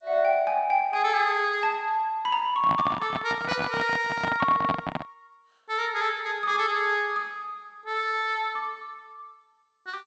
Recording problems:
codec artefacts; G.722, log-spectral distance 2 dB, nothing above 7.6 kHz
handling noise; from 2.5 to 5 s; peak +2 dB vs average level

